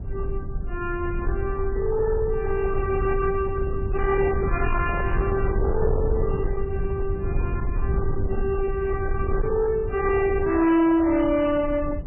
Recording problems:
lossy compression; MP3, log-spectral distance 2 dB, nothing above 2.4 kHz
distorted audio; hard clipping, uneven, signal-to-distortion ratio 11 dB
rumble; below 94 Hz, SNR 5 dB
microphone handling noise; from 4.5 to 6 s; peak -7 dB vs average level

